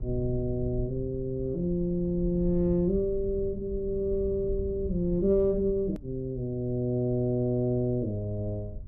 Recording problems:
rumble; below 90 Hz, SNR 12 dB
edit click; at 6 s

